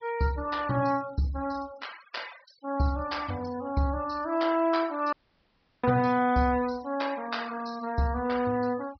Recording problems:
treble missing; nothing above 5.5 kHz
denoising artefacts; signal-to-artefact ratio 18 dB
audio cutting out; at 5 s for 0.5 s

